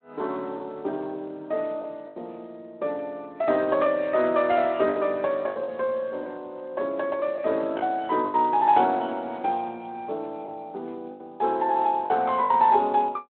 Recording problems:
telephone audio; 260 Hz to 3.8 kHz, Speex
lost packets; 6% of the sound replaced, filled with the last packet

